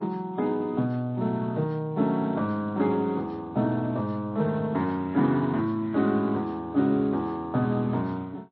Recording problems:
lossy codec; Speex, then MP3, log-spectral distance 2 dB

